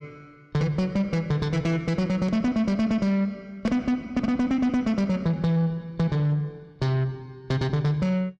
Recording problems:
distorted audio; soft clipping, signal-to-distortion ratio 12 dB

